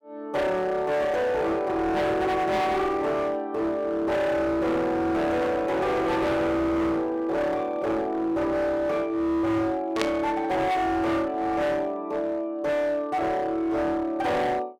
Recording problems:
distortion; hard clipping, uneven, signal-to-distortion ratio 7 dB
burst of static; at 10 s; peak +1 dB vs average level

